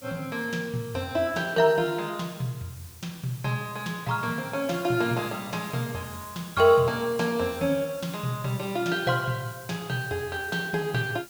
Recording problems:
background hiss; SNR 18 dB

